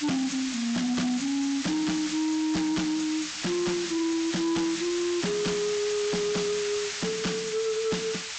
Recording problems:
treble cut off; nothing above 8 kHz
distortion; hard clipping, signal-to-distortion ratio 9 dB
hiss; SNR 6 dB

